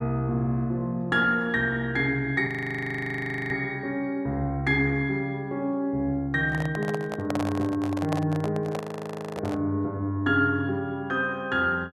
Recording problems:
audio freezing; at 2.5 s for 1 s and at 9 s for 0.5 s
microphone handling noise; from 6.5 to 9.5 s; peak 0 dB vs average level

